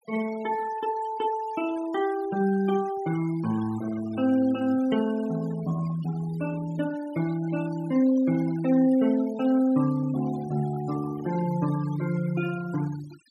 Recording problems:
denoising artefacts; signal-to-artefact ratio 18 dB

